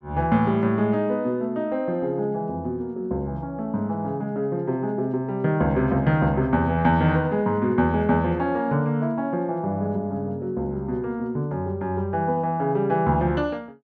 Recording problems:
none

